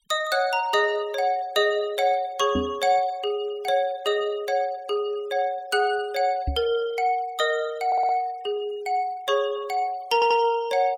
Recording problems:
noise reduction artefacts; signal-to-artefact ratio 25 dB
microphone thump; at 2.5 s and at 6.5 s; peak +1 dB vs average level
audio stuttering; at 8 s and at 10 s

